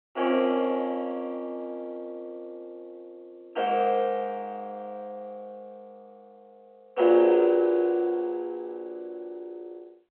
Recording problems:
phone line; 240 Hz to 3.2 kHz, G.711

